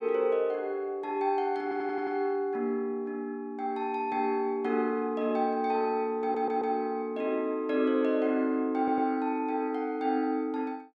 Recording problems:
stutter; at 1.5 s, at 6 s and at 9 s

